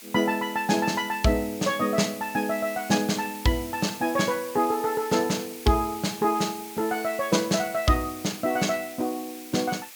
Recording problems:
hiss; SNR 14 dB

